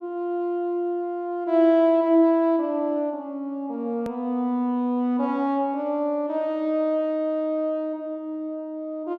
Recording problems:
hard cut with a click; at 4 s

